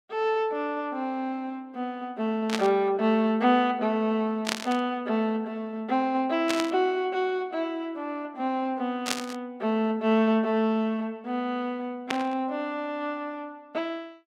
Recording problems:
static burst; 5 times, first at 2.5 s; peak +4 dB vs average level

